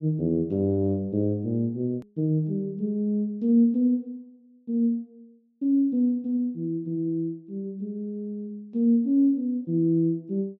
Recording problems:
edit click; at 2 s

